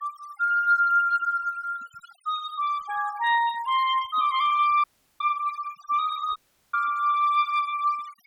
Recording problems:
noise reduction artefacts; signal-to-artefact ratio 19 dB
dropout; at 5 s and at 6.5 s

